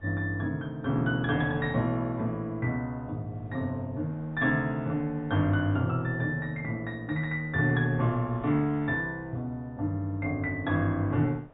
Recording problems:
low-pass filter; nothing above 4 kHz
wind noise; below 680 Hz, SNR 25 dB

